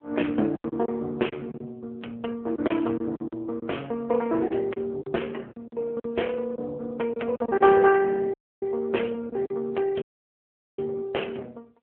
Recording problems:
phone line; 240 Hz to 3.3 kHz, AMR-NB
lost packets; 7% of the sound replaced, filled with silence
audio cutting out; at 8.5 s and at 10 s for 1 s

